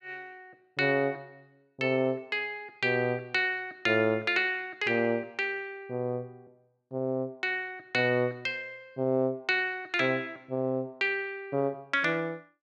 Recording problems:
none

